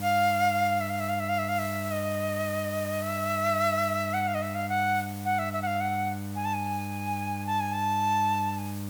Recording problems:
hum; 50 Hz, harmonics up to 1.2 kHz, SNR 8 dB
hiss; SNR 14 dB
static burst; at 3.5 s; peak -16 dB vs average level

